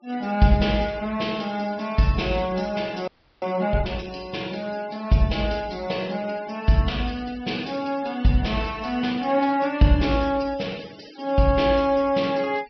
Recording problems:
treble cut off; nothing above 5.5 kHz
noise reduction artefacts; signal-to-artefact ratio 21 dB
audio freezing; at 3 s

